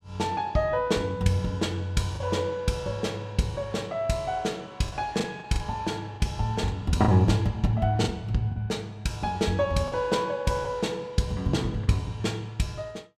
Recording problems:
lost packets; 4% of the sound replaced, filled with the last packet

